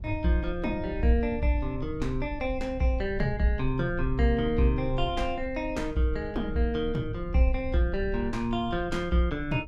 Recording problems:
rumble; below 62 Hz, SNR 10 dB

